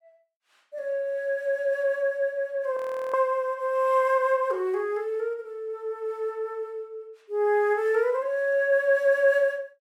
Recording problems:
audio freezing; at 3 s

